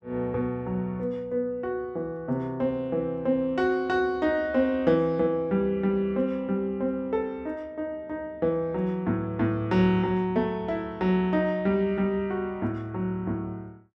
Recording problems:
none

